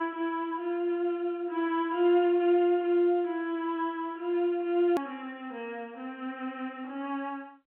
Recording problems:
phone line; 260 Hz to 3.8 kHz, G.711
edit click; at 5 s

